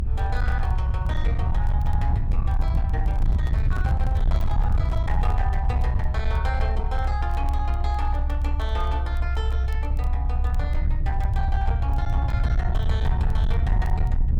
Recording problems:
distorted audio; hard clipping, uneven, signal-to-distortion ratio 11 dB
rumble; below 76 Hz, SNR -9 dB
crackle; vinyl, SNR 25 dB
microphone handling noise; from 3 to 5.5 s; peak -2 dB vs average level

